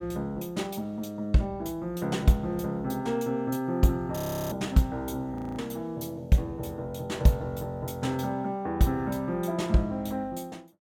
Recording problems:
audio freezing; at 4 s and at 5.5 s

